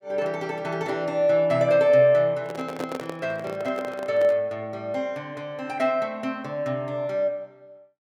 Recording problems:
microphone handling noise; from 2.5 to 4.5 s; peak -5 dB vs average level

